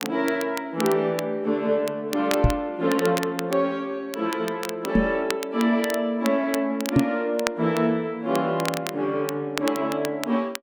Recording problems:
crackling; vinyl, SNR 11 dB
microphone thump; at 2.5 s, at 5 s and at 7 s; peak +9 dB vs average level

